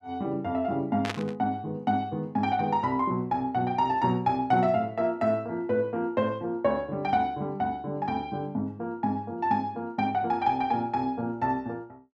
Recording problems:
static burst; at 1 s; peak 0 dB vs average level

